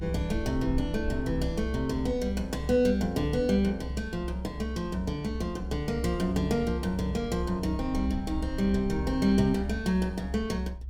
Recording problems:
low-frequency rumble; below 68 Hz, strongest tone 64 Hz, SNR 8 dB

